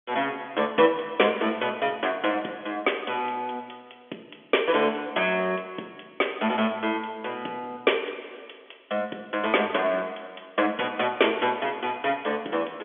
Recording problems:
telephone audio; 240 Hz to 3.4 kHz, G.711

